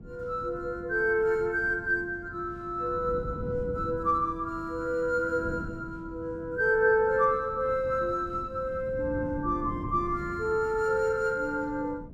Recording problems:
wind on the microphone; below 240 Hz, SNR 14 dB

